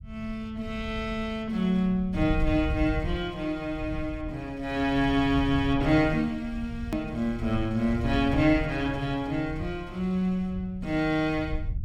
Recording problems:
rumble; below 100 Hz, SNR 10 dB
edit click; at 7 s

